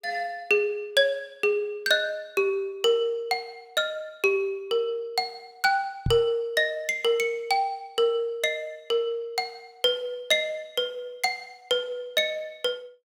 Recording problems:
microphone bump; at 6 s; peak +2 dB vs average level

